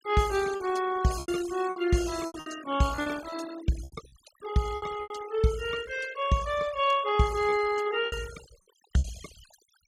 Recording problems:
noise reduction artefacts; signal-to-artefact ratio 15 dB
lost packets; 9% of the sound replaced, filled with repeated pitch periods

